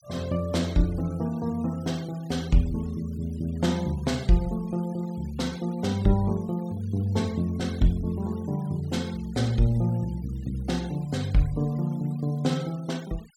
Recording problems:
noise reduction artefacts; signal-to-artefact ratio 22 dB

